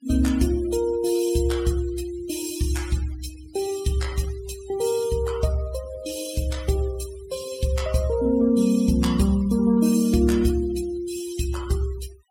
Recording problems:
noise reduction artefacts; signal-to-artefact ratio 18 dB

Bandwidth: 16.5 kHz